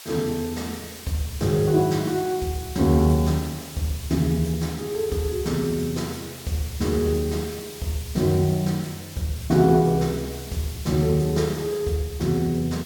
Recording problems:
background hiss; slope +2 dB per octave, SNR 15 dB

